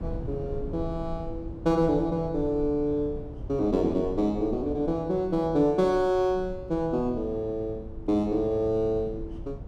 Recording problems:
rumble; below 150 Hz, SNR 13 dB

